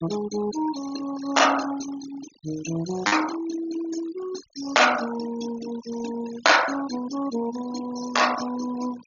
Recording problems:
treble missing; nothing above 7 kHz
denoising artefacts; signal-to-artefact ratio 12 dB
lost packets; 0.5% of the sound replaced, filled with repeated pitch periods

